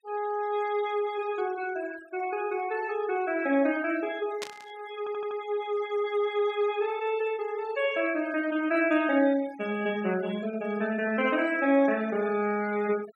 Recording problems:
noise reduction artefacts; signal-to-artefact ratio 18 dB
burst of static; at 4.5 s; peak -3 dB vs average level
stutter; at 5 s

